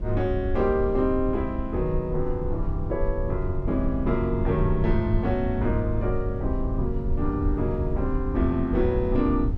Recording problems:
low-frequency rumble; below 80 Hz, SNR 4 dB

